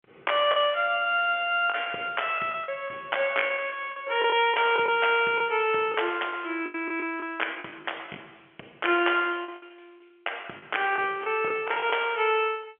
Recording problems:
phone line; 240 Hz to 3.4 kHz, G.711
packet loss; 9% of the sound replaced, filled with the last packet

